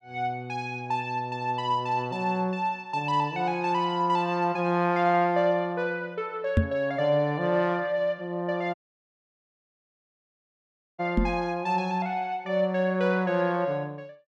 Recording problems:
microphone thump; at 6.5 s and at 11 s; peak +8 dB vs average level
dropout; at 8.5 s for 2 s

